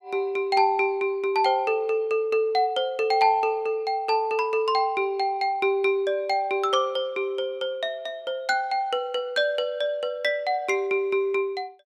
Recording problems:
none

